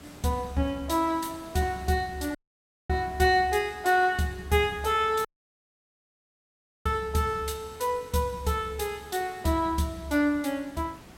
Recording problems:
background hiss; slope -5 dB per octave, SNR 22 dB
dropout; at 2.5 s for 0.5 s and at 5.5 s for 1.5 s

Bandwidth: 16 kHz